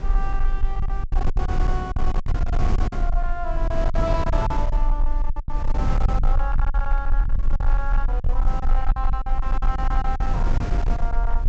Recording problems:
low-pass filter; nothing above 8 kHz
distorted audio; hard clipping, signal-to-distortion ratio 12 dB
low-frequency rumble; below 40 Hz, strongest tone 20 Hz, SNR -6 dB
wind noise; below 150 Hz, SNR -2 dB
packet loss; 12% of the sound replaced, filled with silence

